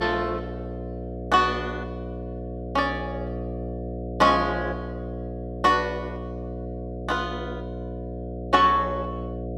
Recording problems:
hum; 60 Hz, harmonics up to 720 Hz, SNR 9 dB

